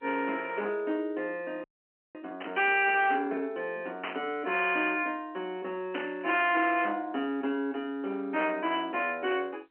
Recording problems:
phone line; 220 Hz to 3.1 kHz, G.711
distortion; hard clipping, uneven, signal-to-distortion ratio 11 dB
audio freezing; at 1.5 s for 0.5 s
static burst; at 2.5 s, at 4 s and at 6 s; peak -2 dB vs average level

